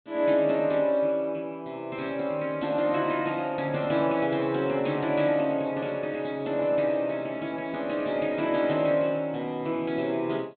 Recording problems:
low-pass filter; nothing above 4 kHz

